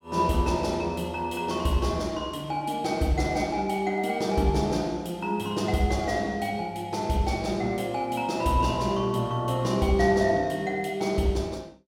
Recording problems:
none

